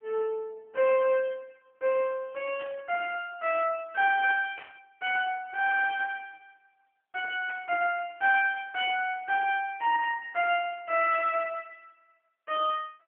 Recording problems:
phone line; 370 Hz to 3.1 kHz, AMR-NB
burst of static; at 2.5 s, at 4.5 s and at 7.5 s; peak -13 dB vs average level

